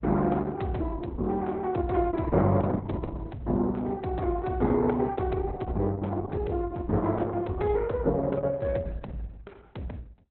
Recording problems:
lossy codec; Opus, log-spectral distance 3 dB, nothing above 4 kHz

